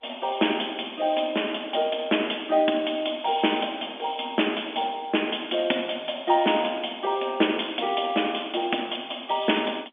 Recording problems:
telephone audio; 220 Hz to 3.5 kHz, G.711

